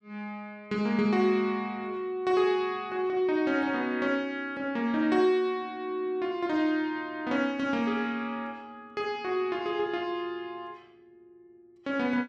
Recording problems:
none

